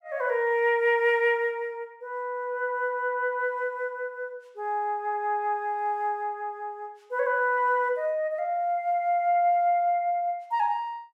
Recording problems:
none

